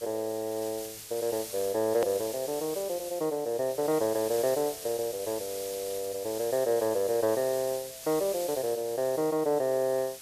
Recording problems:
background hiss; slope +2 dB per octave, SNR 11 dB
hard cut with a click; at 2 s

